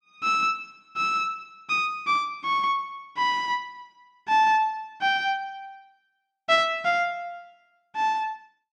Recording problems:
none

